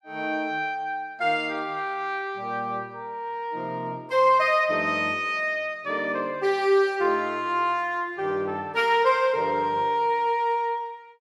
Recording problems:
none

